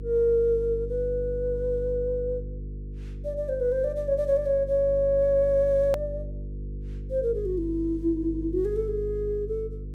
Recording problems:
hum; 50 Hz, harmonics up to 500 Hz, SNR 10 dB
hard cut with a click; at 6 s

